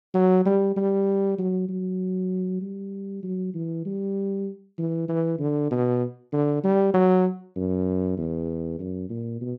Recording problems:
none

